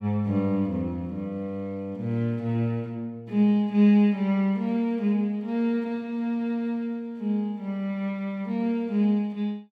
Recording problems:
none

